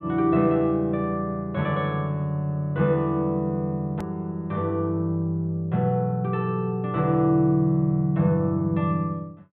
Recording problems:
treble missing; nothing above 4 kHz
click at an edit; at 4 s

